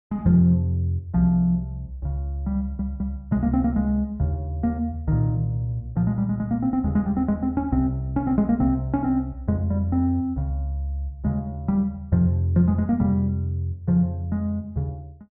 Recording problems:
low-pass filter; nothing above 8 kHz
audio stuttering; at 2.5 s

